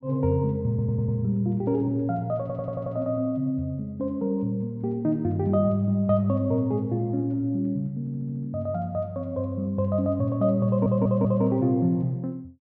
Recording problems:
stutter; 4 times, first at 0.5 s

